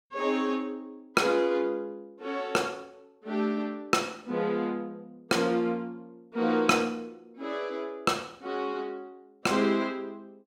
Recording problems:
none

